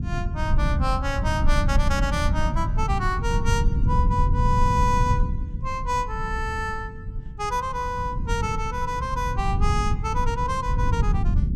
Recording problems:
rumble; below 110 Hz, SNR -1 dB

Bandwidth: 15.5 kHz